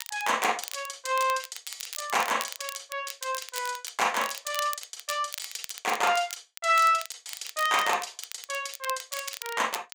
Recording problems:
crackle; vinyl, SNR 11 dB

